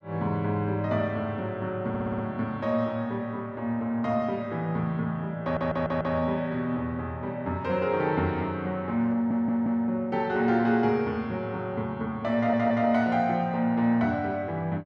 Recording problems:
audio stuttering; 4 times, first at 2 s

